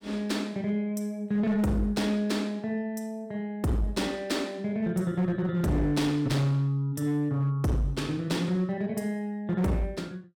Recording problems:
distortion; hard clipping, uneven, signal-to-distortion ratio 11 dB

